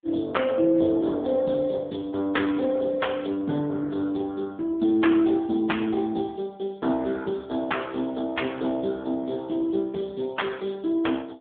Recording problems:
telephone audio; 130 Hz to 3.5 kHz, AMR-NB

